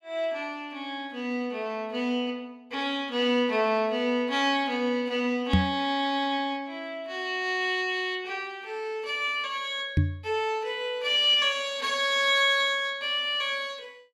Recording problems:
microphone bump; at 5.5 s and at 10 s; peak +8 dB vs average level

